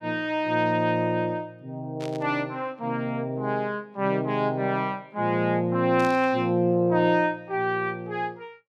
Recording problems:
static burst; at 2 s and at 6 s; peak -11 dB vs average level

